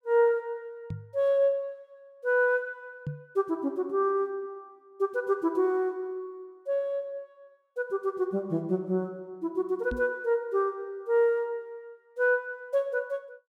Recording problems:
knock on the microphone; at 1 s, at 3 s and at 10 s; peak -2 dB vs average level

